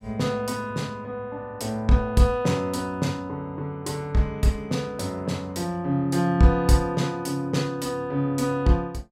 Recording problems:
none

